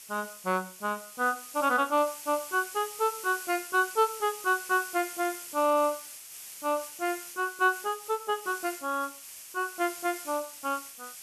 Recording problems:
hiss; slope +3 dB per octave, SNR 11 dB

